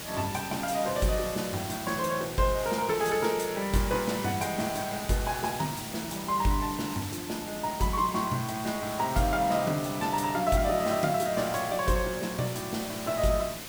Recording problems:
hiss; slope -1 dB per octave, SNR 9 dB

